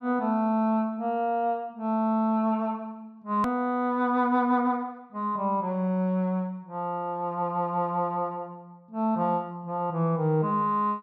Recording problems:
hard cut with a click; at 3.5 s

